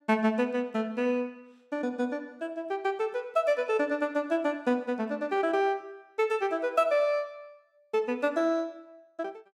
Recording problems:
none

